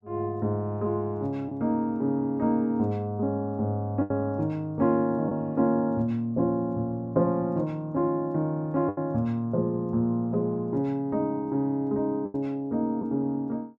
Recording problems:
lost packets; 2% of the sound replaced, filled with the last packet

